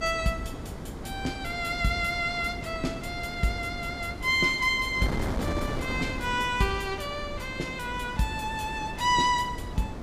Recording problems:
mains hum; 50 Hz, harmonics up to 500 Hz, SNR 20 dB
wind on the microphone; below 490 Hz, SNR 9 dB

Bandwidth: 15.5 kHz